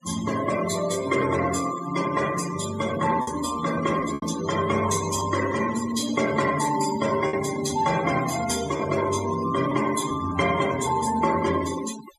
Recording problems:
denoising artefacts; signal-to-artefact ratio 11 dB
packet loss; 2% of the sound replaced, filled with repeated pitch periods

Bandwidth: 14.5 kHz